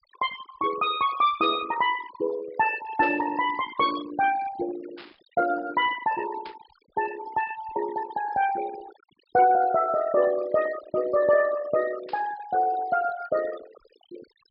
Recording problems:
treble missing; nothing above 5.3 kHz
denoising artefacts; signal-to-artefact ratio 14 dB
static burst; 5 times, first at 1.5 s; peak -13 dB vs average level

